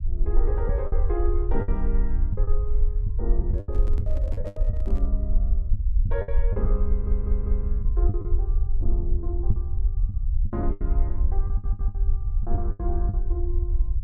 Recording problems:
low-frequency rumble; below 54 Hz, SNR -9 dB
packet loss; 10% of the sound replaced, filled with the last packet
microphone handling noise; from 3.5 to 5 s; peak -2 dB vs average level
audio stuttering; at 7 s and at 11 s

